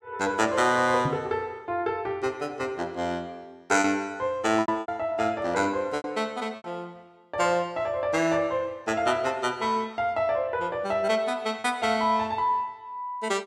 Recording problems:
packet loss; 3% of the sound replaced, filled with repeated pitch periods
microphone bump; at 1 s; peak +1 dB vs average level

